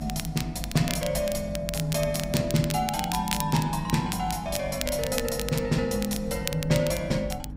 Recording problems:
hum; 50 Hz, harmonics up to 300 Hz, SNR 14 dB
low-frequency rumble; below 130 Hz, SNR 14 dB
crackling; vinyl, SNR 8 dB

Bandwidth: 15.5 kHz